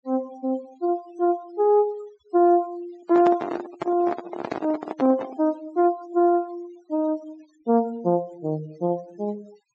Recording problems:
treble missing; nothing above 8 kHz
denoising artefacts; signal-to-artefact ratio 23 dB
handling noise; from 3 to 5.5 s; peak 0 dB vs average level

